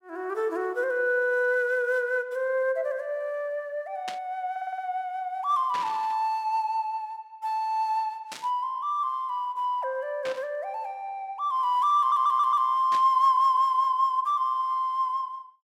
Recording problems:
static burst; 5 times, first at 4 s; peak -6 dB vs average level
audio stuttering; at 4.5 s and at 12 s

